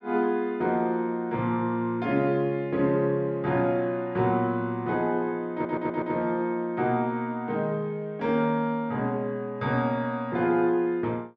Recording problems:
audio stuttering; at 5.5 s

